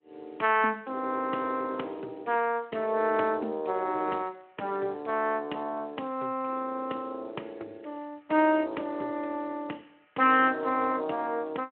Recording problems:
phone line; 220 Hz to 3 kHz, Speex

